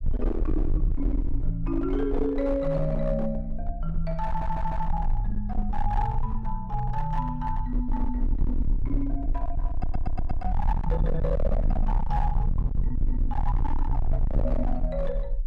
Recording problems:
distorted audio; hard clipping, signal-to-distortion ratio 6 dB
low-frequency rumble; below 48 Hz, strongest tone 20 Hz, SNR 0 dB
stutter; at 4.5 s and at 9.5 s

